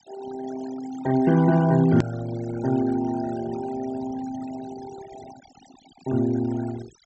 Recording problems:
treble missing; nothing above 8 kHz
denoising artefacts; signal-to-artefact ratio 16 dB
edit click; at 2 s

